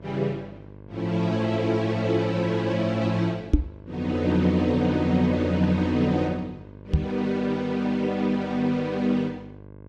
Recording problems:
hum; 50 Hz, harmonics up to 1.1 kHz, SNR 20 dB
microphone bump; at 3.5 s and at 7 s; peak +9 dB vs average level

